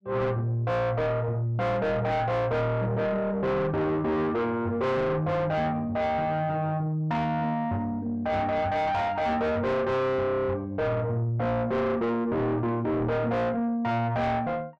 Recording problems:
distorted audio; soft clipping, signal-to-distortion ratio 7 dB

